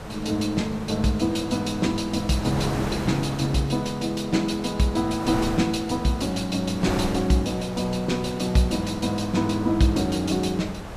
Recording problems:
wind on the microphone; below 1 kHz, SNR 10 dB

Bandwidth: 14.5 kHz